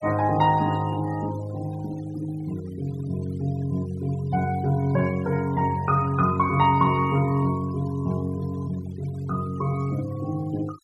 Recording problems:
noise reduction artefacts; signal-to-artefact ratio 21 dB

